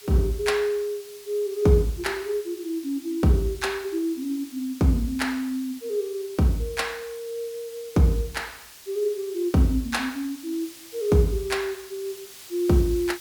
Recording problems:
background hiss; slope +2 dB per octave, SNR 18 dB

